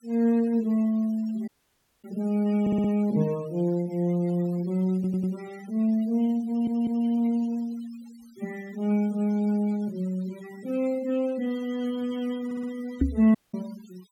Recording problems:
denoising artefacts; signal-to-artefact ratio 23 dB
audio cutting out; at 1.5 s for 0.5 s and at 13 s
audio stuttering; 4 times, first at 2.5 s
microphone thump; at 13 s; peak +7 dB vs average level

